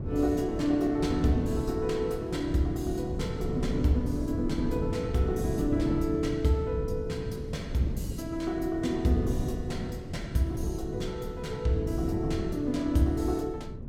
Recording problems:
wind noise; below 230 Hz, SNR 5 dB

